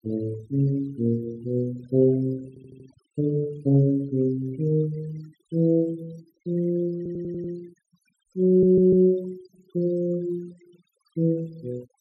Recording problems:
noise reduction artefacts; signal-to-artefact ratio 25 dB
stutter; at 2.5 s, at 7 s and at 8.5 s

